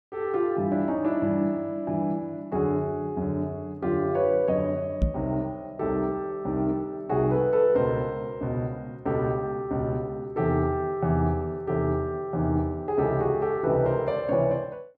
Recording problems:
microphone bump; at 5 s; peak +6 dB vs average level

